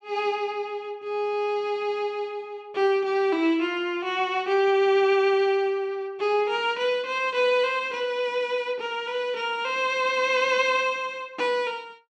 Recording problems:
none

